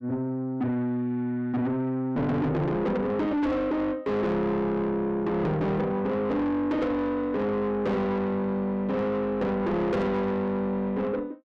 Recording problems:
distorted audio; soft clipping, signal-to-distortion ratio 7 dB

